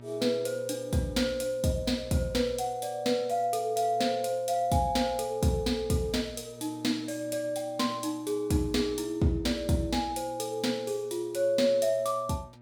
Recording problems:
mains hum; 60 Hz, harmonics up to 1.6 kHz, SNR 21 dB

